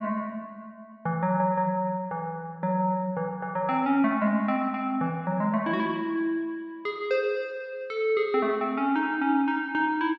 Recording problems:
none

